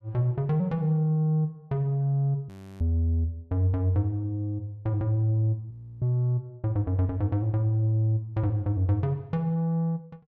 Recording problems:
frozen audio; at 2.5 s and at 5.5 s

